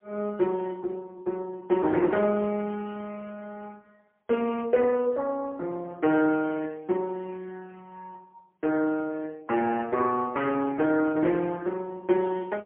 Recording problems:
telephone audio; 260 Hz to 3.3 kHz, AMR-NB, then MP3

